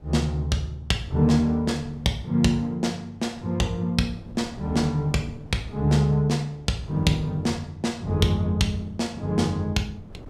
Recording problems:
wind on the microphone; below 280 Hz, SNR 22 dB

